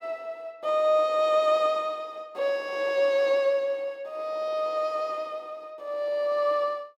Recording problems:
none

